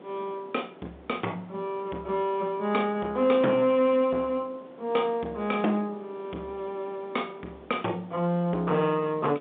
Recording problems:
telephone audio; 220 Hz to 3.6 kHz, G.711
distortion; soft clipping, signal-to-distortion ratio 13 dB
hiss; SNR 22 dB

